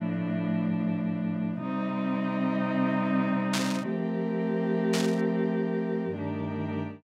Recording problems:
burst of static; at 3.5 s and at 5 s; peak +3 dB vs average level

